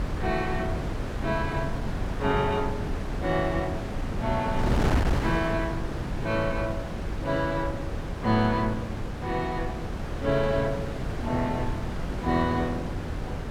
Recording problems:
wind noise; below 370 Hz, SNR 2 dB

